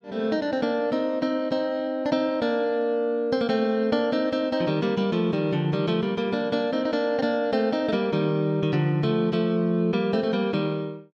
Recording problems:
none

